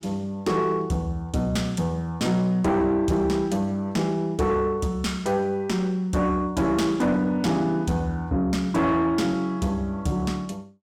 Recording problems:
distortion; soft clipping, signal-to-distortion ratio 10 dB

